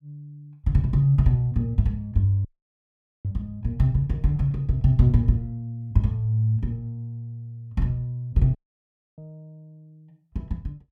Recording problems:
dropout; at 2.5 s for 1 s and at 8.5 s for 0.5 s

